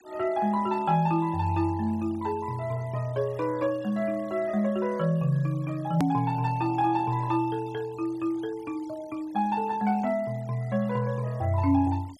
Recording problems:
denoising artefacts; signal-to-artefact ratio 25 dB
hard cut with a click; at 6 s

